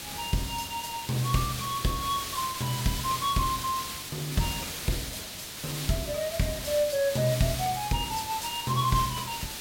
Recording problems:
background hiss; slope 0 dB per octave, SNR 5 dB

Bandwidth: 16.5 kHz